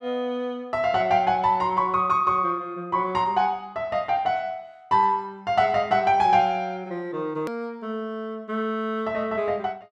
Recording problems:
click at an edit; at 7.5 s

